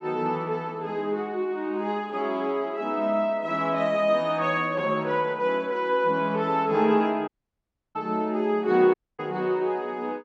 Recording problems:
audio cutting out; at 7.5 s for 0.5 s and at 9 s

